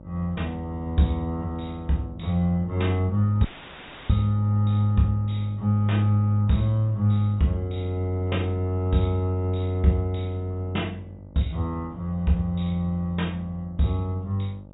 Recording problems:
treble cut off; nothing above 4 kHz
hum; 50 Hz, harmonics up to 900 Hz, SNR 20 dB
audio cutting out; at 3.5 s for 0.5 s; filled with static

